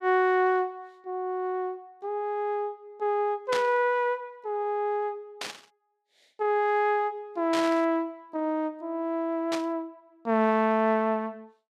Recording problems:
static burst; 4 times, first at 3.5 s; peak -1 dB vs average level

